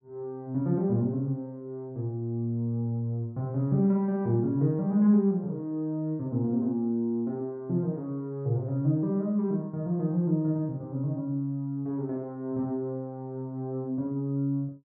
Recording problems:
none

